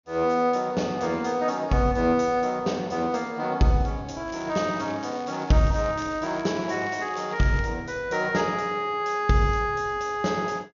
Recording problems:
treble cut off; nothing above 6.8 kHz
crackling; from 4.5 to 7.5 s; loose cable, SNR 22 dB

